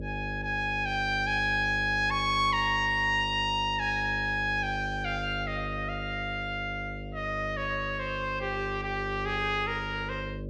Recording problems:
hum; 50 Hz, harmonics up to 600 Hz, SNR 9 dB

